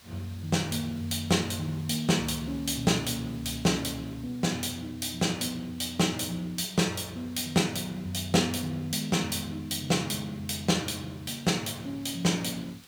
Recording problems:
hiss; slope 0 dB per octave, SNR 23 dB

